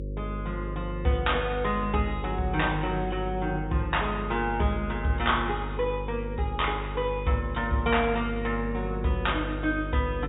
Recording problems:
treble cut off; nothing above 4 kHz
hum; 50 Hz, harmonics up to 550 Hz, SNR 7 dB

